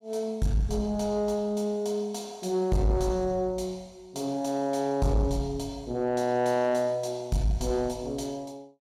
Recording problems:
distortion; soft clipping, signal-to-distortion ratio 10 dB

